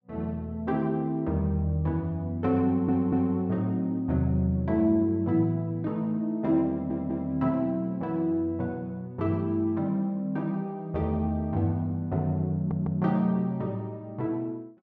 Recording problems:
stutter; at 2.5 s, at 6.5 s and at 13 s

